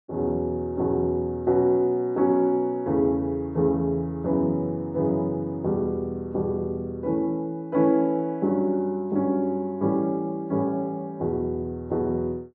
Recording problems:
none

